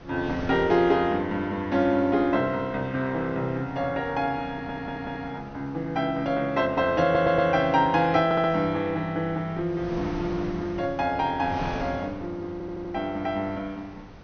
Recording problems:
low-pass filter; nothing above 6.4 kHz
wind on the microphone; below 810 Hz, SNR 16 dB
stutter; 4 times, first at 4.5 s

